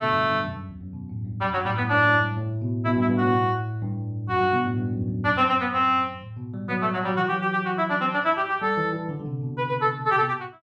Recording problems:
none

